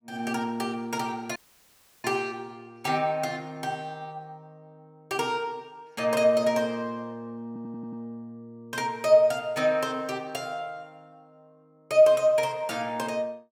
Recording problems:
dropout; at 1.5 s for 0.5 s
stutter; at 7.5 s

